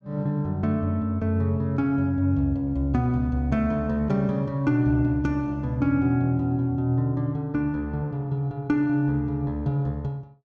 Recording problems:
none

